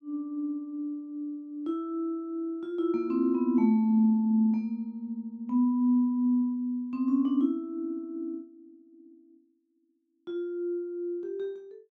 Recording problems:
none

